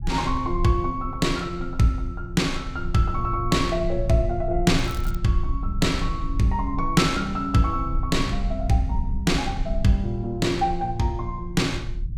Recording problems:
rumble; below 66 Hz, SNR 8 dB
crackling; at 5 s; loose cable, SNR 22 dB

